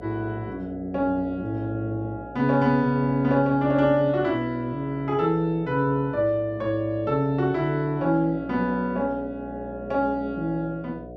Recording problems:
hum; 60 Hz, harmonics up to 720 Hz, SNR 17 dB

